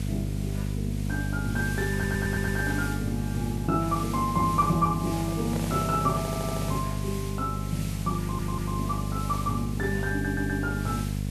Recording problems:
electrical hum; 50 Hz, harmonics up to 550 Hz, SNR 2 dB
background hiss; slope +1 dB per octave, SNR 11 dB
stutter; 4 times, first at 2 s
handling noise; from 5 to 7 s; peak -3 dB vs average level

